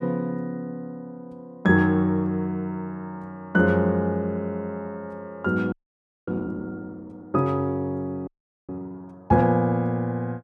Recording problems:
frozen audio; at 5.5 s for 0.5 s and at 8.5 s

